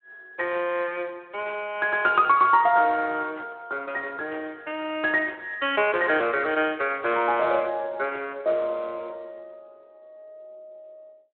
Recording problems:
telephone audio; 260 Hz to 3.7 kHz, Speex

